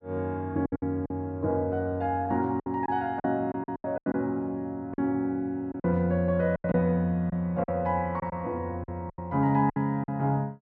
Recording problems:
lost packets; 10% of the sound replaced, filled with silence

